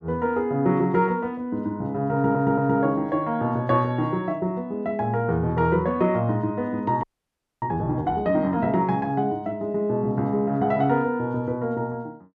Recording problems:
stutter; at 2 s
audio freezing; at 7 s for 0.5 s

